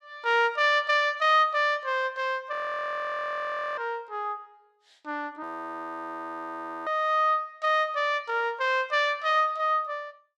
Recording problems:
frozen audio; at 2.5 s for 1 s and at 5.5 s for 1.5 s

